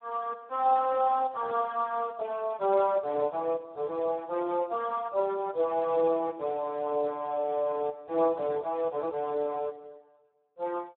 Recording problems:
phone line; 300 Hz to 2.1 kHz, Speex

